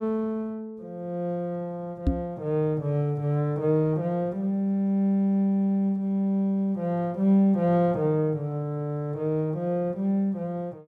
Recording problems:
knock on the microphone; at 2 s; peak +5 dB vs average level

